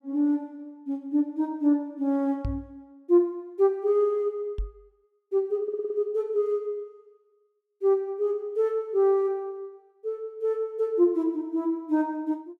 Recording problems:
microphone bump; at 2.5 s and at 4.5 s; peak -1 dB vs average level
stutter; at 5.5 s

